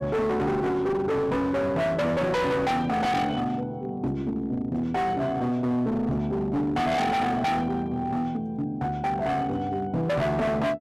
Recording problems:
distortion; hard clipping, signal-to-distortion ratio 6 dB

